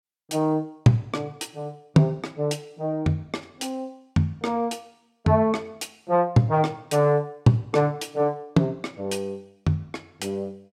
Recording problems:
none

